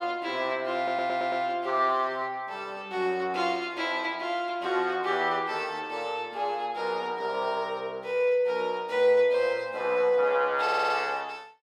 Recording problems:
audio stuttering; at 1 s and at 11 s

